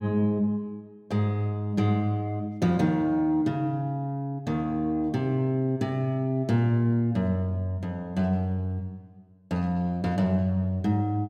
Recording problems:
none

